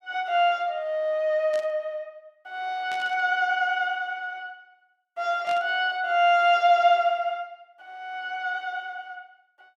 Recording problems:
burst of static; at 1.5 s, at 3 s and at 5.5 s; peak -12 dB vs average level

